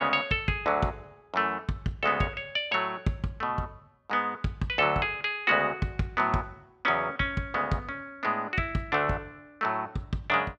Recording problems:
none

